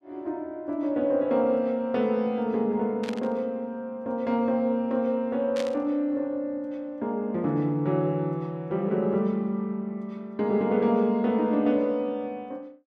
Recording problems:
burst of static; at 3 s and at 5.5 s; peak -6 dB vs average level

